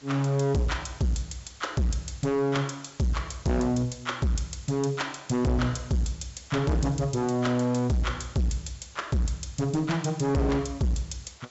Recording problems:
treble missing; nothing above 7.7 kHz
distortion; hard clipping, signal-to-distortion ratio 7 dB
hiss; slope -1 dB per octave, SNR 25 dB

